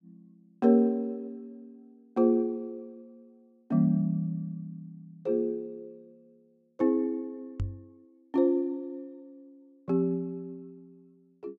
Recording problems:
microphone thump; at 7.5 s; peak -1 dB vs average level

